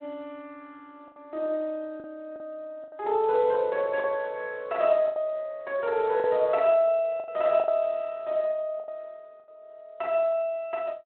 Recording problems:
phone line; 170 Hz to 3.4 kHz, Speex
packet loss; 6% of the sound replaced, filled with the last packet

